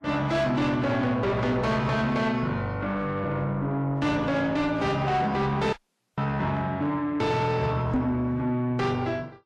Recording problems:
lossy compression; Vorbis, log-spectral distance 2 dB, nothing above 13.1 kHz
distorted audio; soft clipping, signal-to-distortion ratio 11 dB
audio cutting out; at 5.5 s
microphone bump; at 8 s; peak +4 dB vs average level

